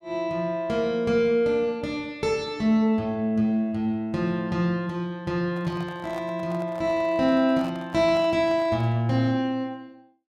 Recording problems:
handling noise; from 5.5 to 9 s; peak -11 dB vs average level

